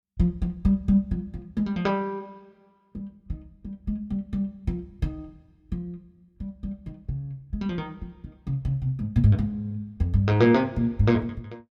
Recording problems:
none

